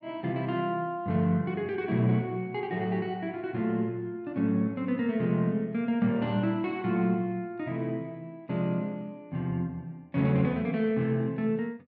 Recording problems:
none

